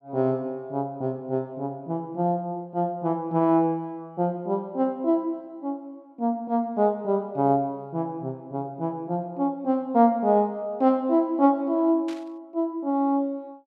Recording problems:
burst of static; at 12 s; peak -13 dB vs average level

